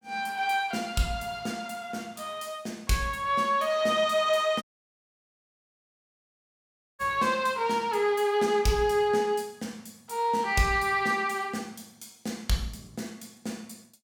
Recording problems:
audio cutting out; at 4.5 s for 2.5 s

